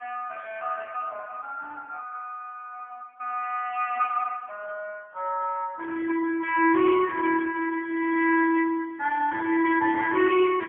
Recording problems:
telephone audio; 300 Hz to 3.2 kHz, AMR-NB, then MP3

